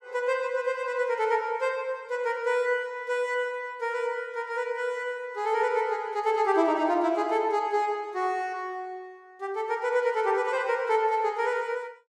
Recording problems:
none

